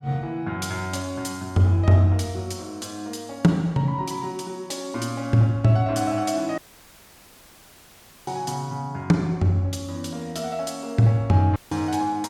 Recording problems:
dropout; at 6.5 s for 1.5 s and at 12 s

